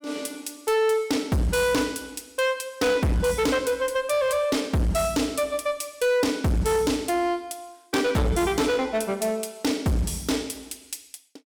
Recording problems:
distortion; hard clipping, signal-to-distortion ratio 7 dB

